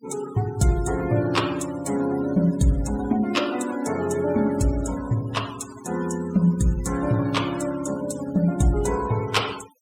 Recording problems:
denoising artefacts; signal-to-artefact ratio 16 dB

